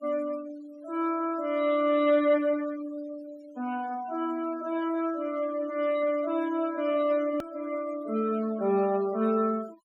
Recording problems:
denoising artefacts; signal-to-artefact ratio 21 dB
hard cut with a click; at 7.5 s

